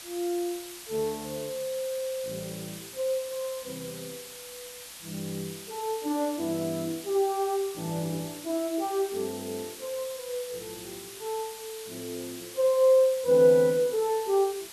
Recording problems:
background hiss; slope +2 dB per octave, SNR 13 dB

